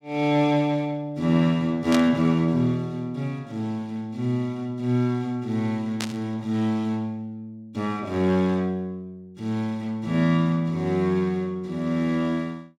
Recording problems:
burst of static; at 2 s and at 6 s; peak 0 dB vs average level

